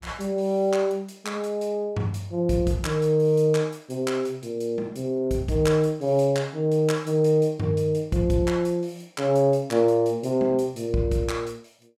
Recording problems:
none

